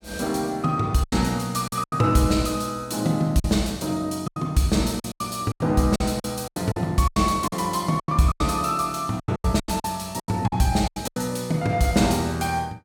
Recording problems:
lost packets; 12% of the sound replaced, filled with silence

